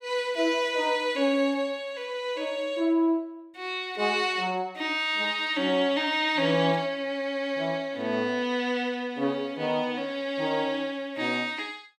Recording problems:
none

